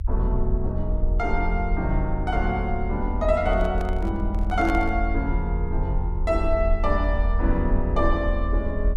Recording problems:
rumble; below 60 Hz, SNR 1 dB
microphone handling noise; from 3.5 to 5 s; peak -2 dB vs average level

